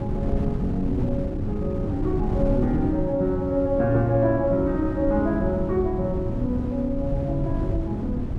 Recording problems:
wind noise; below 180 Hz, SNR 5 dB

